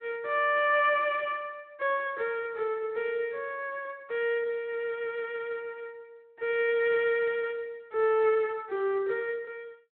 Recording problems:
phone line; 300 Hz to 3.5 kHz, Speex

